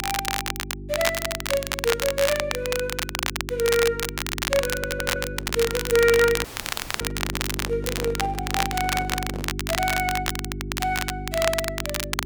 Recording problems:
hum; 50 Hz, harmonics up to 400 Hz, SNR 9 dB
crackle; vinyl, SNR 2 dB
audio stuttering; at 5 s
microphone handling noise; from 5.5 to 9.5 s; peak -6 dB vs average level
audio cutting out; at 6.5 s for 0.5 s

